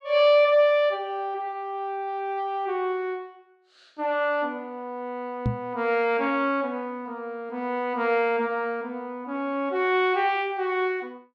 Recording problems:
knock on the microphone; at 5.5 s; peak +3 dB vs average level

